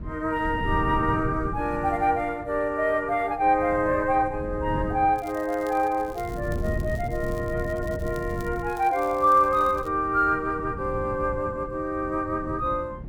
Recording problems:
wind noise; below 180 Hz, SNR 10 dB
crackling; from 5 to 10 s; loose cable, SNR 25 dB

